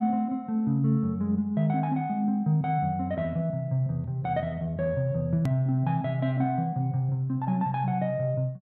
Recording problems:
click at an edit; at 5.5 s

